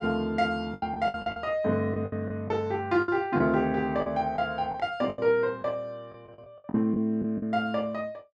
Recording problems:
packet loss; 11% of the sound replaced, filled with the last packet

